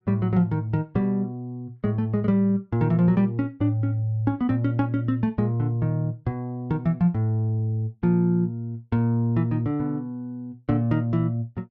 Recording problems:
none

